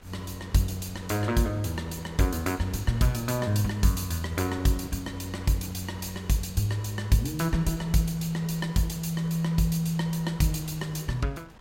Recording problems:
wind noise; below 1.1 kHz, SNR 22 dB

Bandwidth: 16 kHz